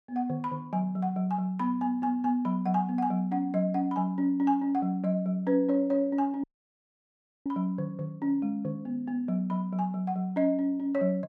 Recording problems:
audio cutting out; at 6.5 s for 1 s

